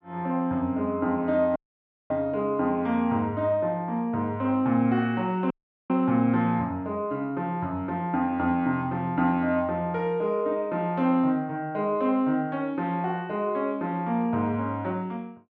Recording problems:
dropout; at 1.5 s for 0.5 s and at 5.5 s

